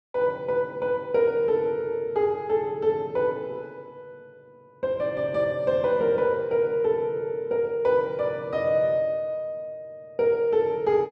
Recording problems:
none

